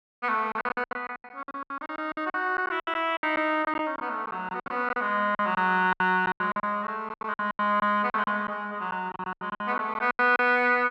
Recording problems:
lost packets; 19% of the sound replaced, filled with silence

